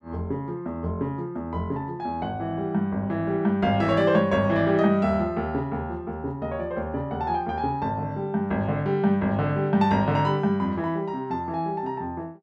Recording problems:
none

